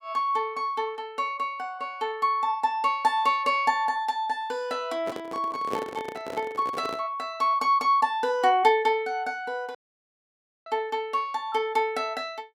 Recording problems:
handling noise; from 5 to 7 s; peak 0 dB vs average level
audio cutting out; at 10 s for 1 s

